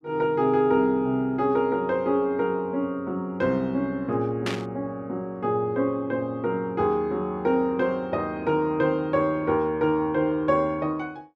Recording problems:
burst of static; at 4.5 s; peak -1 dB vs average level

